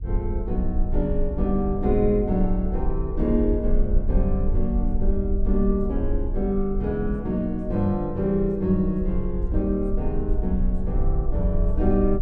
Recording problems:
rumble; below 54 Hz, strongest tone 22 Hz, SNR 3 dB

